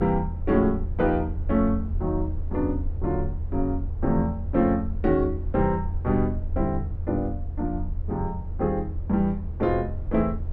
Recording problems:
rumble; below 82 Hz, SNR 5 dB

